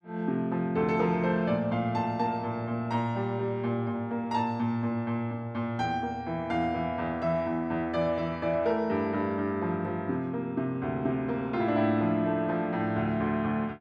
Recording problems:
none

